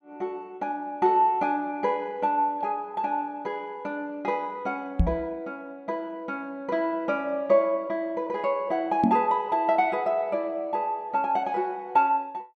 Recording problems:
microphone bump; at 5 s and at 9 s; peak +8 dB vs average level

